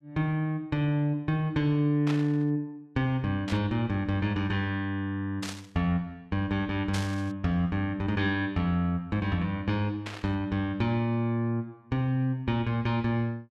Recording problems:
burst of static; 5 times, first at 2 s; peak -3 dB vs average level

